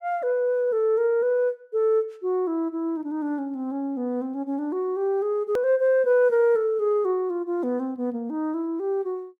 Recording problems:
edit click; at 5.5 s

